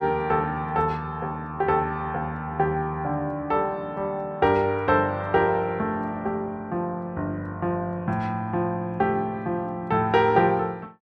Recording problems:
none

